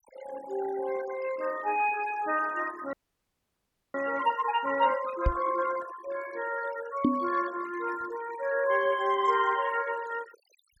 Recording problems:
denoising artefacts; signal-to-artefact ratio 16 dB
frozen audio; at 3 s for 1 s
knock on the microphone; at 5.5 s and at 7 s; peak +8 dB vs average level

